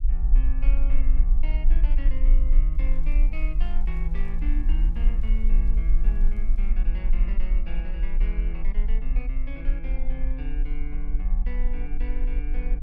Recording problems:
rumble; below 40 Hz, strongest tone 22 Hz, SNR -13 dB
crackle; from 3 to 6.5 s; loose cable, SNR 29 dB

